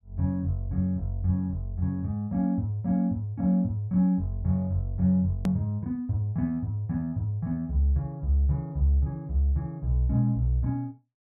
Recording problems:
click at an edit; at 5.5 s

